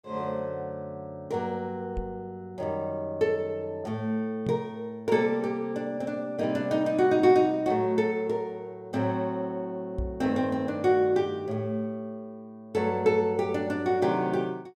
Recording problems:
microphone bump; at 2 s, at 4.5 s and at 10 s; peak -2 dB vs average level

